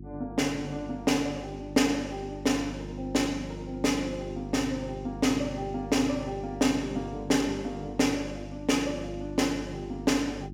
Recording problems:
electrical hum; 50 Hz, harmonics up to 350 Hz, SNR 12 dB

